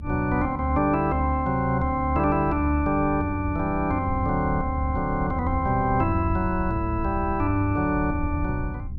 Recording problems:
rumble; below 82 Hz, SNR 9 dB

